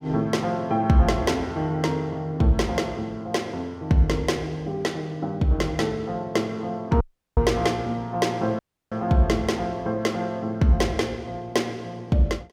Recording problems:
audio cutting out; at 7 s and at 8.5 s

